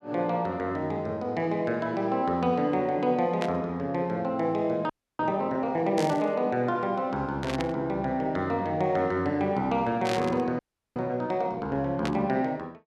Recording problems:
burst of static; 5 times, first at 3.5 s; peak -2 dB vs average level
audio freezing; at 5 s and at 11 s

